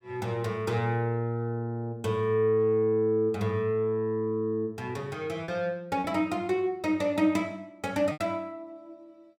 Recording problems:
packet loss; 1.8% of the sound replaced, filled with repeated pitch periods

